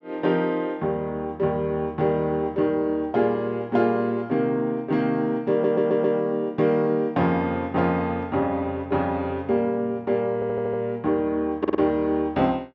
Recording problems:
stutter; at 5.5 s, at 10 s and at 12 s

